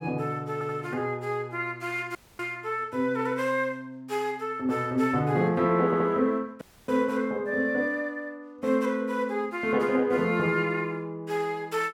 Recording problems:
stutter; at 0.5 s and at 6 s
audio cutting out; at 2 s and at 6.5 s

